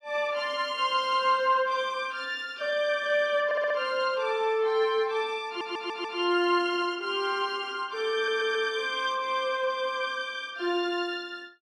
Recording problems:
audio stuttering; at 3.5 s, at 5.5 s and at 8 s

